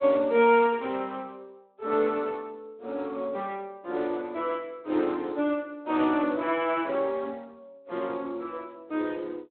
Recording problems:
phone line; 240 Hz to 3.7 kHz, Speex

